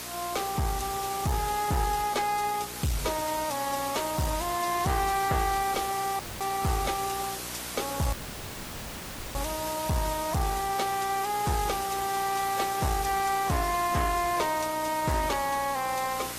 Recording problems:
codec artefacts; AAC, log-spectral distance 9 dB
distorted audio; hard clipping, uneven, signal-to-distortion ratio 9 dB
electrical hum; 60 Hz, harmonics up to 1.3 kHz, SNR 21 dB
background hiss; slope -1 dB per octave, SNR 7 dB
audio cutting out; at 6 s and at 8 s for 1 s

